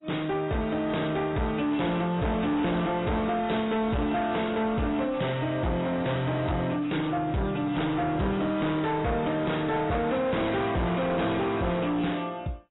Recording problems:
lossy codec; AAC, log-spectral distance 4 dB, nothing above 3.8 kHz
distorted audio; soft clipping, signal-to-distortion ratio 7 dB

